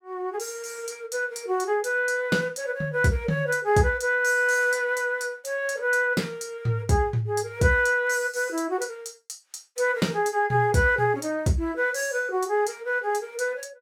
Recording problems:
none

